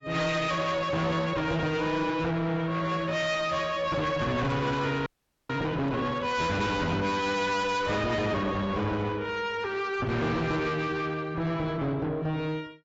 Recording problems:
lossy compression; AAC, log-spectral distance 3 dB, nothing above 7.6 kHz
distortion; soft clipping, signal-to-distortion ratio 7 dB
frozen audio; at 5 s

